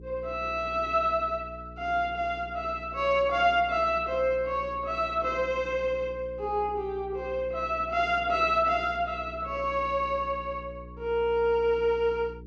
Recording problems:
electrical hum; 60 Hz, harmonics up to 480 Hz, SNR 18 dB

